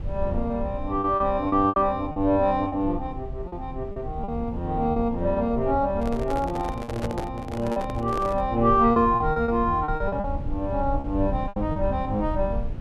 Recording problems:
low-frequency rumble; below 94 Hz, SNR 10 dB
packet loss; 8% of the sound replaced, filled with repeated pitch periods
microphone handling noise; from 6 to 8.5 s; peak -3 dB vs average level

